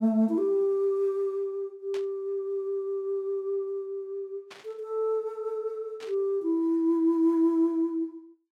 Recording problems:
static burst; at 2 s, at 4.5 s and at 6 s; peak -12 dB vs average level

